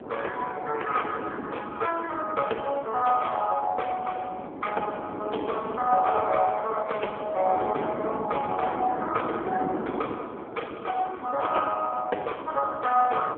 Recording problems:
telephone audio; 320 Hz to 2.3 kHz, AMR-NB
wind noise; below 520 Hz, SNR 9 dB

